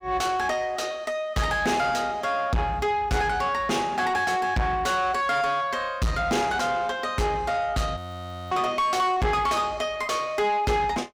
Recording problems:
distorted audio; soft clipping, signal-to-distortion ratio 6 dB
frozen audio; at 8 s for 0.5 s

